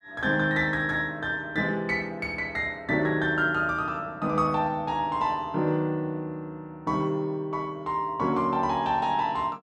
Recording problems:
none

